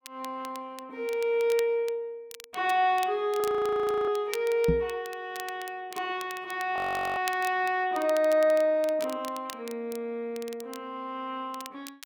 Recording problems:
crackle; vinyl, SNR 17 dB
audio freezing; at 3.5 s for 0.5 s and at 7 s
microphone bump; at 4.5 s; peak +5 dB vs average level

